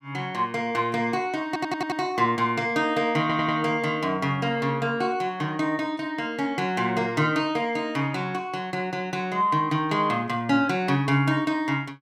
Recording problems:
stutter; at 1.5 s and at 3 s

